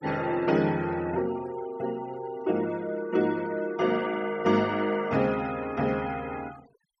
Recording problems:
denoising artefacts; signal-to-artefact ratio 20 dB

